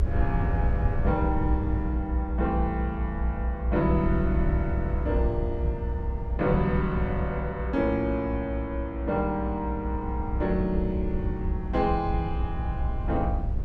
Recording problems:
low-frequency rumble; below 86 Hz, SNR 1 dB

